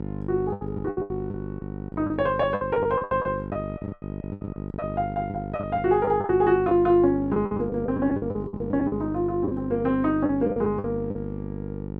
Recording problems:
electrical hum; 50 Hz, harmonics up to 1 kHz, SNR 9 dB
packet loss; 14% of the sound replaced, filled with the last packet

